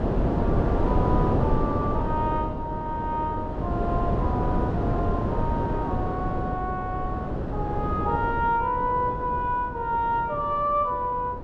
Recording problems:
wind noise; below 430 Hz, SNR -1 dB

